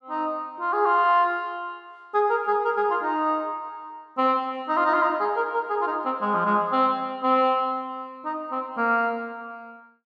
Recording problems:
none

